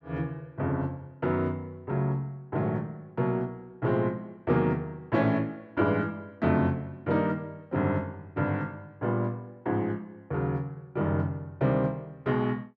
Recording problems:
none

